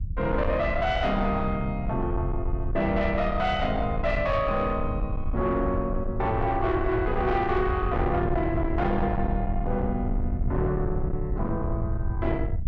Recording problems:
distorted audio; soft clipping, signal-to-distortion ratio 10 dB
rumble; below 100 Hz, SNR 4 dB

